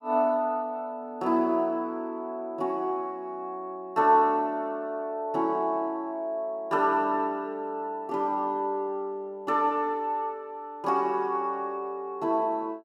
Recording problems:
none

